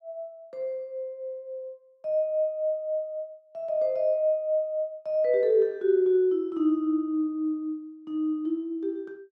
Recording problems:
none

